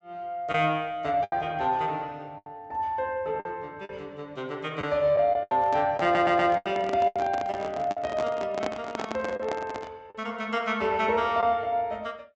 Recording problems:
treble missing; nothing above 8 kHz
lost packets; 6% of the sound replaced, filled with the last packet
microphone handling noise; from 5.5 to 10 s; peak -1 dB vs average level
audio stuttering; at 6 s

